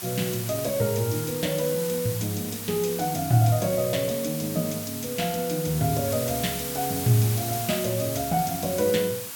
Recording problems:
background hiss; slope +1 dB per octave, SNR 6 dB

